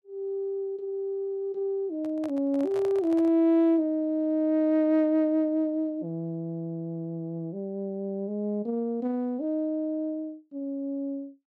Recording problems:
microphone handling noise; from 2 to 3.5 s; peak -9 dB vs average level

